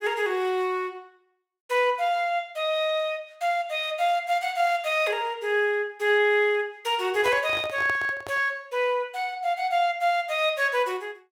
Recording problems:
handling noise; from 7 to 8.5 s; peak -6 dB vs average level

